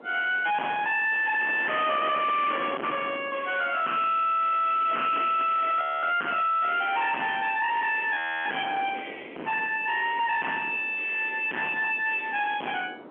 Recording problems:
telephone audio; 650 Hz to 3.3 kHz, G.711
distorted audio; hard clipping, uneven, signal-to-distortion ratio 4 dB
wind noise; below 2.2 kHz, SNR 14 dB
frozen audio; at 6 s and at 8 s

